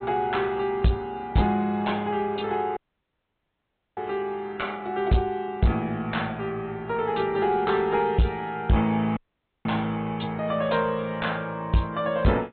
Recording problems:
treble cut off; nothing above 4 kHz
codec artefacts; AAC, log-spectral distance 2 dB
distortion; soft clipping, signal-to-distortion ratio 7 dB
audio cutting out; at 3 s for 1 s and at 9 s

